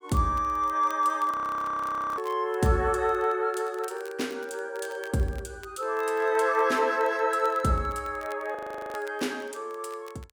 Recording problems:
crackle; vinyl, SNR 26 dB
frozen audio; at 1.5 s for 1 s and at 8.5 s

